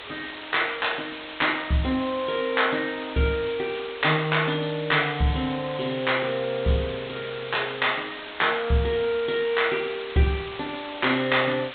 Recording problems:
low-pass filter; nothing above 4 kHz
hiss; SNR 12 dB

